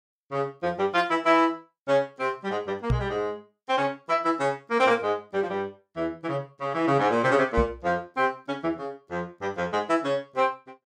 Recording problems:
microphone bump; at 3 s and at 7.5 s; peak +4 dB vs average level

